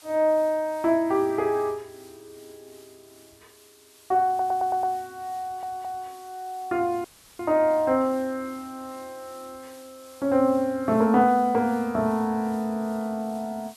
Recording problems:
background hiss; SNR 26 dB
stutter; at 4.5 s and at 5.5 s
dropout; at 7 s

